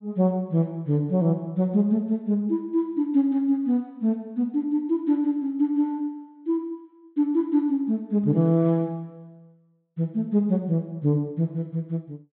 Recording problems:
treble cut off; nothing above 4 kHz

